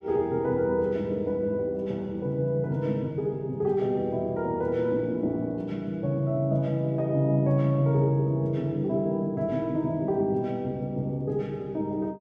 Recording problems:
none

